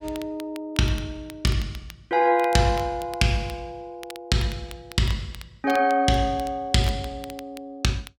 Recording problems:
crackle; vinyl, SNR 20 dB

